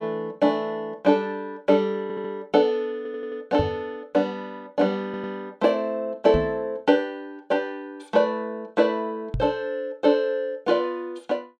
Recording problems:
audio stuttering; at 2 s, at 3 s and at 5 s
knock on the microphone; at 3.5 s, at 6.5 s and at 9.5 s; peak +1 dB vs average level

